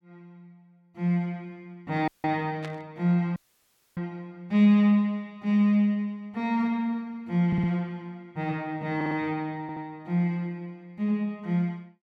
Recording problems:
audio cutting out; at 2 s and at 3.5 s for 0.5 s
burst of static; at 2.5 s; peak -9 dB vs average level
audio stuttering; at 7.5 s, at 9 s and at 9.5 s

